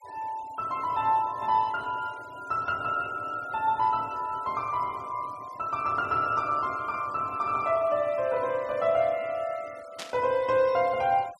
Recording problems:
noise reduction artefacts; signal-to-artefact ratio 24 dB
burst of static; at 10 s; peak -6 dB vs average level

